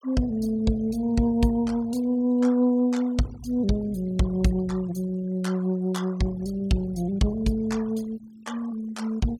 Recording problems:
denoising artefacts; signal-to-artefact ratio 22 dB

